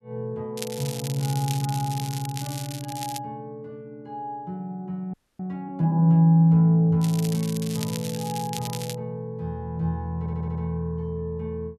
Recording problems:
crackle; from 0.5 to 3 s and from 7 to 9 s; loose cable, SNR 12 dB
frozen audio; at 5 s
audio stuttering; at 10 s

